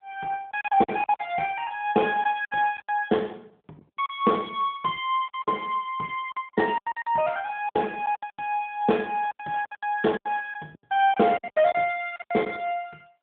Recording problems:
phone line; 220 Hz to 3.5 kHz, AMR-NB
packet loss; 13% of the sound replaced, filled with silence

